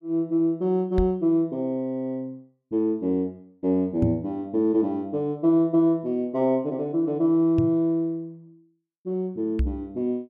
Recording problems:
microphone thump; 4 times, first at 1 s; peak +3 dB vs average level

